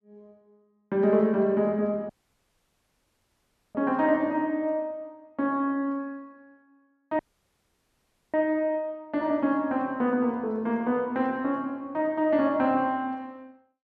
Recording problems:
audio cutting out; at 2 s for 1.5 s and at 7 s for 1 s

